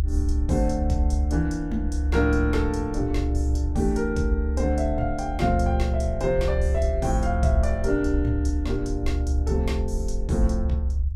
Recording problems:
low-frequency rumble; below 70 Hz, strongest tone 70 Hz, SNR 1 dB

